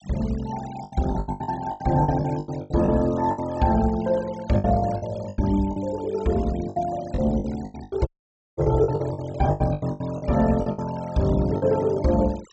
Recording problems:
low-pass filter; nothing above 7.9 kHz
noise reduction artefacts; signal-to-artefact ratio 21 dB
lost packets; 15% of the sound replaced, filled with the last packet
dropout; at 8 s for 0.5 s

